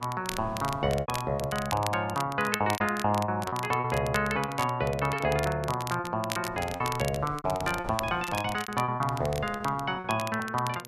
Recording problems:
electrical hum; 60 Hz, harmonics up to 1.6 kHz, SNR 21 dB
wind on the microphone; below 430 Hz, SNR 18 dB
crackling; vinyl, SNR 11 dB
lost packets; 11% of the sound replaced, filled with repeated pitch periods

